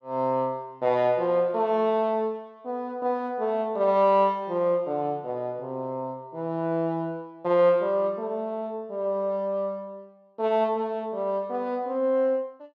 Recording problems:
none

